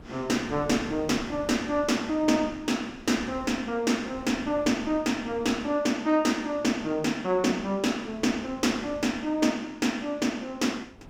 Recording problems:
wind on the microphone; below 430 Hz, SNR 20 dB

